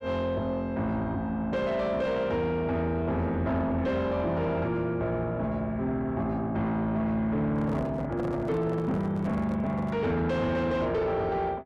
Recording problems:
distortion; soft clipping, signal-to-distortion ratio 10 dB
microphone handling noise; from 7.5 to 10 s; peak 0 dB vs average level

